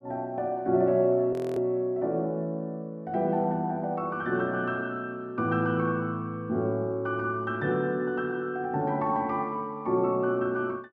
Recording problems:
audio freezing; at 1.5 s

